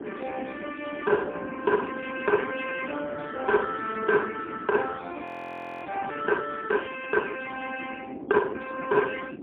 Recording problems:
phone line; 220 Hz to 3.1 kHz, AMR-NB, then MP3
wind noise; below 390 Hz, SNR 10 dB
audio freezing; at 5.5 s for 0.5 s

